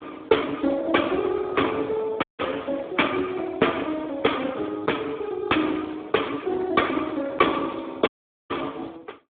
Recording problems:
phone line; 190 Hz to 3.6 kHz, Speex
dropout; at 2 s and at 8 s

